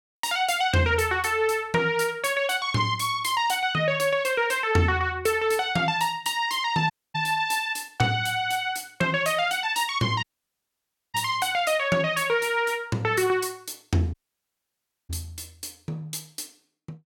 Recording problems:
dropout; at 7 s, at 10 s for 1 s and at 14 s for 1 s

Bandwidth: 17.5 kHz